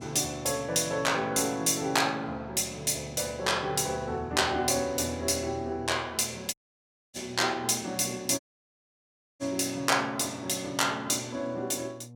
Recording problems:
hum; 60 Hz, harmonics up to 720 Hz, SNR 20 dB
dropout; at 6.5 s for 0.5 s and at 8.5 s for 1 s

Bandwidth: 17.5 kHz